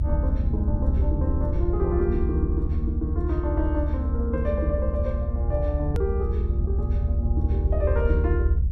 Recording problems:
low-frequency rumble; below 78 Hz, SNR -4 dB
hard cut with a click; at 6 s

